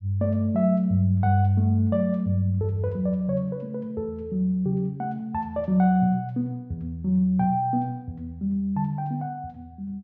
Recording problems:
none

